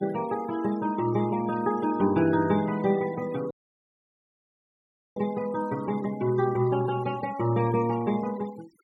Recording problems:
denoising artefacts; signal-to-artefact ratio 17 dB
dropout; at 3.5 s for 1.5 s

